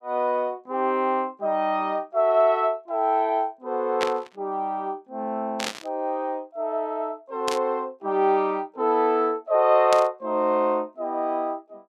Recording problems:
burst of static; 4 times, first at 4 s; peak +1 dB vs average level

